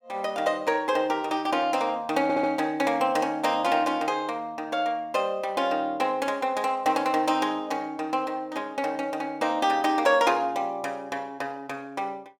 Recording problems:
audio stuttering; at 2 s

